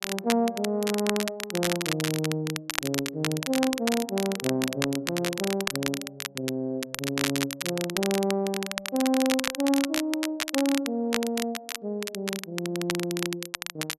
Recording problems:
crackle; vinyl, SNR 3 dB

